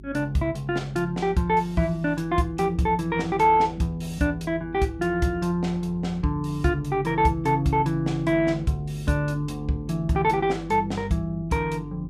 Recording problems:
hum; 50 Hz, harmonics up to 400 Hz, SNR 18 dB

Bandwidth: 15.5 kHz